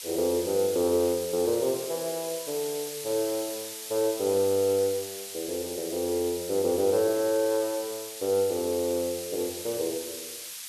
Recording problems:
hiss; slope +5 dB per octave, SNR 9 dB

